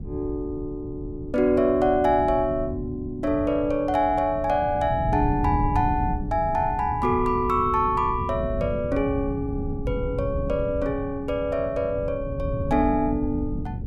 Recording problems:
wind noise; below 150 Hz, SNR 8 dB

